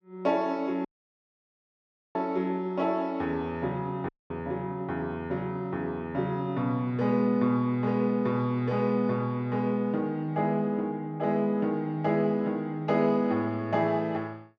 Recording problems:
audio cutting out; at 1 s for 1.5 s and at 4 s

